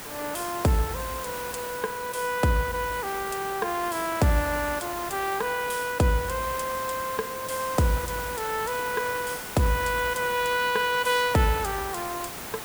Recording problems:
hiss; slope -3 dB per octave, SNR 9 dB

